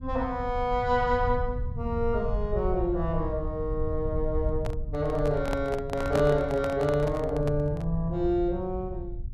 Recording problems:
rumble; below 88 Hz, SNR 7 dB
handling noise; from 4.5 to 8 s; peak +1 dB vs average level

